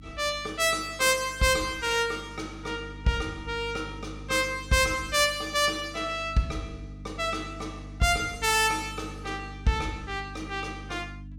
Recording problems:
hum; 50 Hz, harmonics up to 300 Hz, SNR 16 dB

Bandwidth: 17 kHz